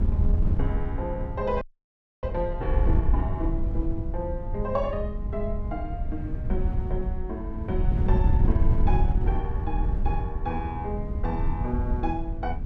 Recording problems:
wind noise; below 84 Hz, SNR -4 dB
frozen audio; at 1.5 s for 0.5 s

